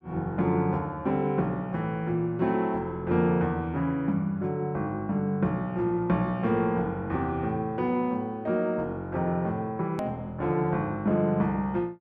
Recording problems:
edit click; at 10 s

